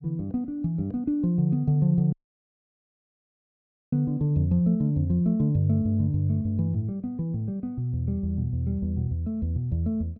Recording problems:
audio cutting out; at 2 s for 2 s

